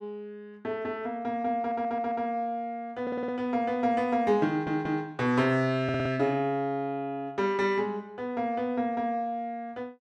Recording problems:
stutter; 4 times, first at 1.5 s

